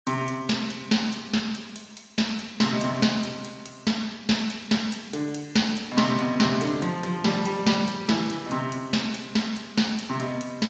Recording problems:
lossy codec; Speex, then MP3, log-spectral distance 5 dB, nothing above 7.1 kHz

